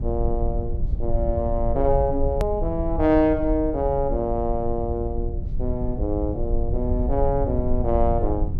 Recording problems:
low-frequency rumble; below 72 Hz, SNR 4 dB
hard cut with a click; at 2.5 s

